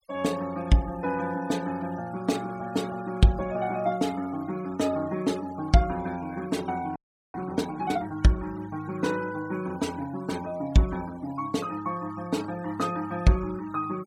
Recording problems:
denoising artefacts; signal-to-artefact ratio 18 dB
audio freezing; at 7 s

